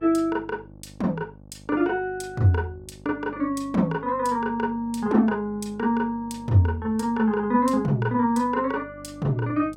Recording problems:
mains hum; 50 Hz, harmonics up to 900 Hz, SNR 23 dB

